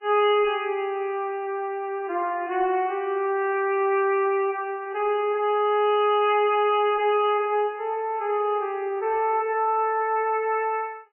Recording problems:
lossy compression; MP3, log-spectral distance 2 dB, nothing above 2.5 kHz
distortion; soft clipping, signal-to-distortion ratio 10 dB

